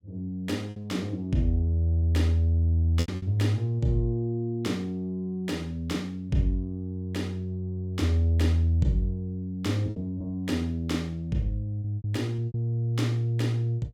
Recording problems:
packet loss; 4% of the sound replaced, filled with repeated pitch periods

